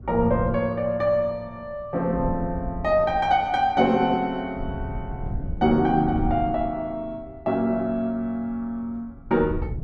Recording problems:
wind on the microphone; below 120 Hz, SNR 11 dB

